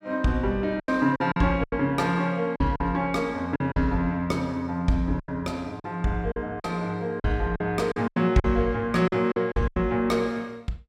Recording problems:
packet loss; 10% of the sound replaced, filled with silence

